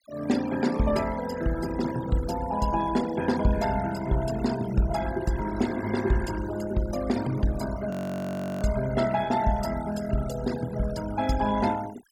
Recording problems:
denoising artefacts; signal-to-artefact ratio 14 dB
frozen audio; at 8 s for 0.5 s

